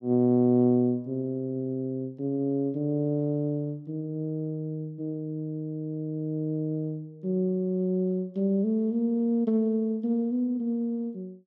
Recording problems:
none

